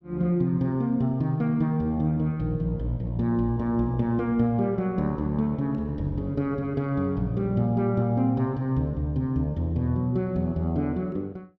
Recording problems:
none

